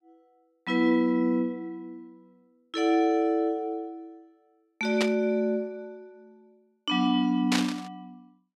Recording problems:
burst of static; at 5 s and at 7.5 s; peak +3 dB vs average level

